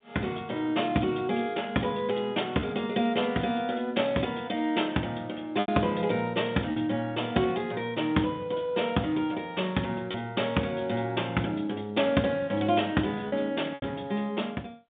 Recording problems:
telephone audio; 130 Hz to 3.7 kHz, G.711
lost packets; 1.9% of the sound replaced, filled with repeated pitch periods

